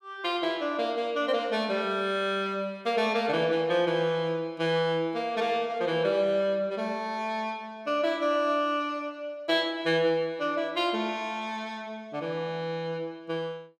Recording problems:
none

